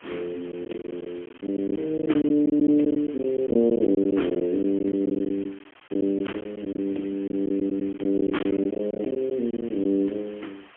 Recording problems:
telephone audio; 220 Hz to 3.3 kHz, AMR-NB, then MP3
hiss; SNR 23 dB
packet loss; 11% of the sound replaced, filled with silence

